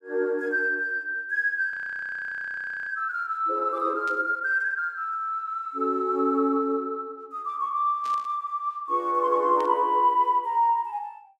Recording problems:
audio freezing; at 1.5 s for 1 s
static burst; at 4 s, at 8 s and at 9.5 s; peak -14 dB vs average level

